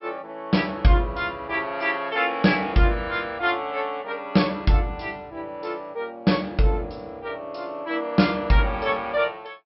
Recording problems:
treble cut off; nothing above 5.5 kHz

